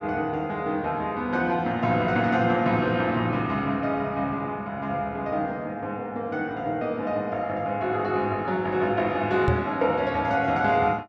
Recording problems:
microphone bump; at 9.5 s; peak +4 dB vs average level

